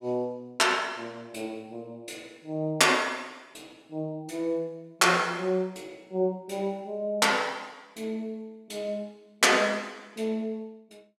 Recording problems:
none

